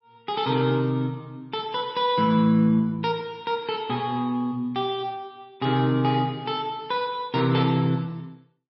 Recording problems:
lossy compression; MP3, log-spectral distance 2 dB, nothing above 4.9 kHz

